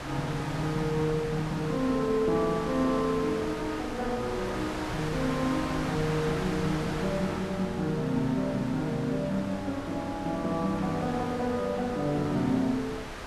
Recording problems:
wind noise; below 2 kHz, SNR 8 dB

